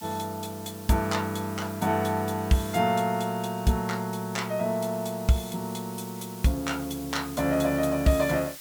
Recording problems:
hiss; slope +2 dB per octave, SNR 16 dB

